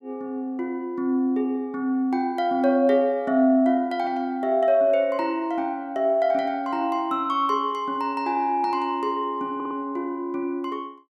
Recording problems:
stutter; at 9.5 s

